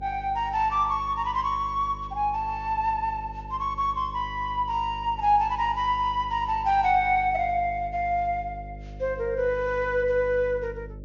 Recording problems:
treble cut off; nothing above 7 kHz
hum; 50 Hz, harmonics up to 600 Hz, SNR 16 dB

